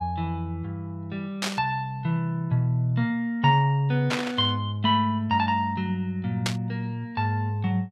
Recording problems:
static burst; at 1.5 s, at 4 s and at 6.5 s; peak +3 dB vs average level

